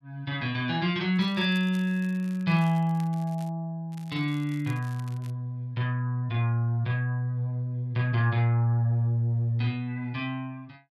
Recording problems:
crackle; from 1 to 3.5 s and from 4 to 5.5 s; loose cable, SNR 26 dB

